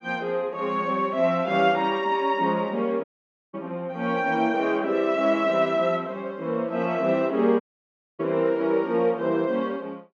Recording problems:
audio cutting out; at 3 s and at 7.5 s for 0.5 s

